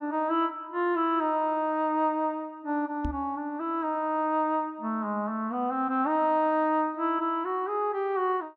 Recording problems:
knock on the microphone; at 3 s; peak -2 dB vs average level

